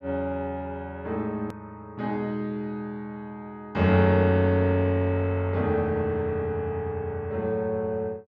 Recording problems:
hard cut with a click; at 1.5 s

